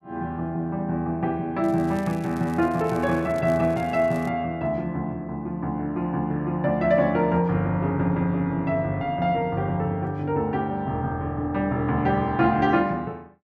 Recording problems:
crackling; from 1.5 to 4.5 s; loose cable, SNR 25 dB

